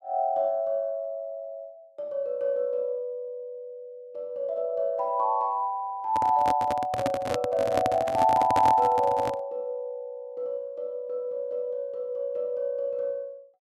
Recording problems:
microphone handling noise; from 6 to 9.5 s; peak +2 dB vs average level

